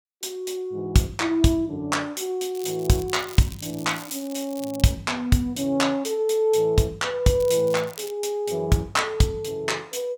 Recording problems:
crackling; from 2.5 to 5 s and at 7.5 s; loose cable, SNR 17 dB

